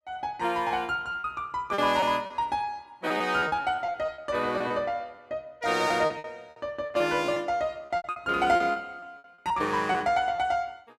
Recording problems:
lost packets; 13% of the sound replaced, filled with repeated pitch periods

